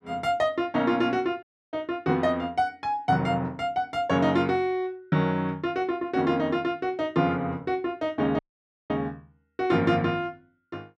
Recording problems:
dropout; at 1.5 s and at 8.5 s for 0.5 s

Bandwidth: 12.5 kHz